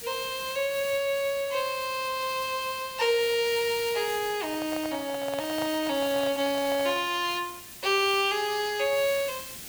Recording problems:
hiss; SNR 13 dB
handling noise; from 4.5 to 7 s; peak -5 dB vs average level

